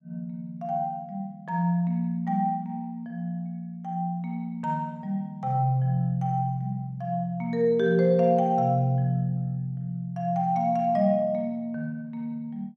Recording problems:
none

